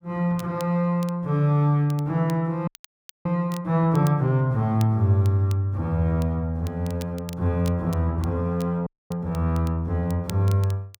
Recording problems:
crackle; vinyl, SNR 23 dB
frozen audio; at 2.5 s for 0.5 s and at 9 s

